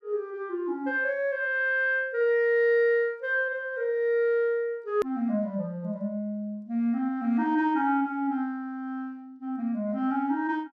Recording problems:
edit click; at 5 s

